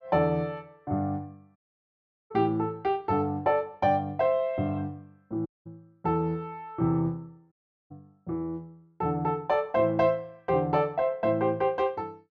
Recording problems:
dropout; at 1.5 s for 0.5 s, at 5.5 s and at 7.5 s

